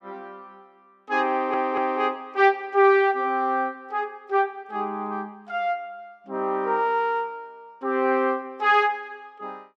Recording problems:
audio stuttering; at 1.5 s

